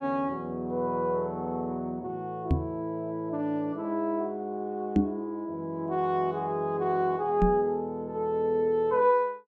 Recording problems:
microphone bump; at 2.5 s, at 5 s and at 7.5 s; peak +9 dB vs average level

